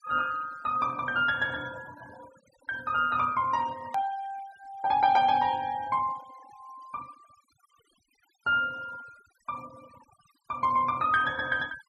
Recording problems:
noise reduction artefacts; signal-to-artefact ratio 23 dB
edit click; at 4 s

